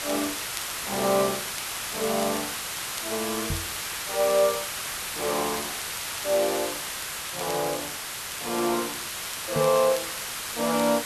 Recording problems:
hiss; SNR 3 dB
crackle; vinyl, SNR 18 dB
microphone bump; at 3.5 s and at 9.5 s; peak -1 dB vs average level

